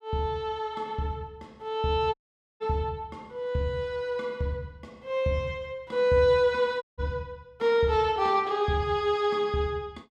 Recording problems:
dropout; at 2 s and at 7 s

